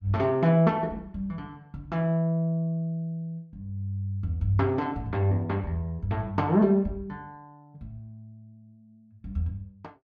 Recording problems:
none

